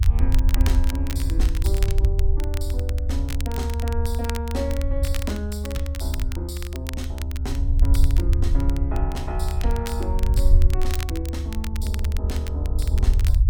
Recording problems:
low-frequency rumble; below 74 Hz, SNR -8 dB
crackle; vinyl, SNR 7 dB

